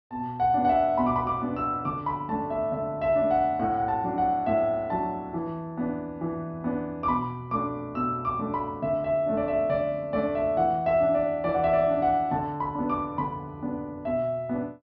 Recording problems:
treble missing; nothing above 5.5 kHz

